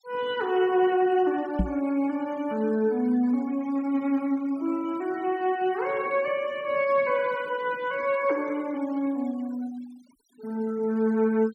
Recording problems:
noise reduction artefacts; signal-to-artefact ratio 24 dB
microphone bump; at 1.5 s; peak +4 dB vs average level

